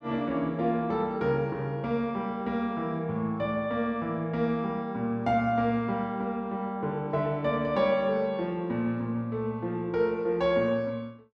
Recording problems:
none

